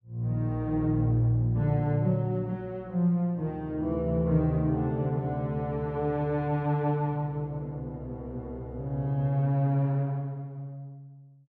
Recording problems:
none

